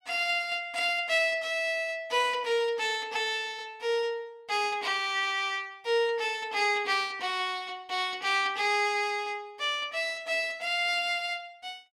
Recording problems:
none

